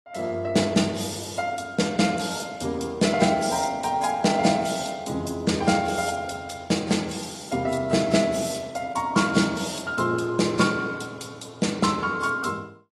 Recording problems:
lossy codec; AAC, log-spectral distance 4 dB, nothing above 11.6 kHz

